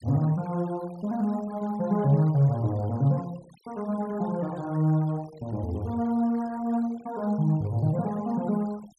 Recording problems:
denoising artefacts; signal-to-artefact ratio 26 dB

